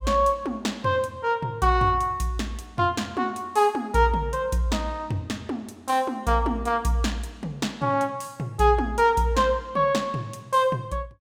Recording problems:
none

